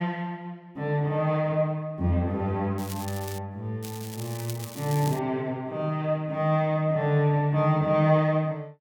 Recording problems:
crackling; at 3 s and from 4 to 5 s; loose cable, SNR 15 dB

